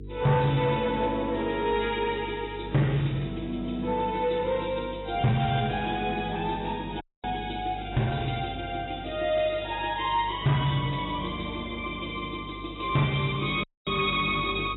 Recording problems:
lossy codec; AAC, log-spectral distance 6 dB, nothing above 3.8 kHz
distorted audio; soft clipping, signal-to-distortion ratio 11 dB
hum; 50 Hz, harmonics up to 450 Hz, SNR 14 dB
audio cutting out; at 7 s and at 14 s

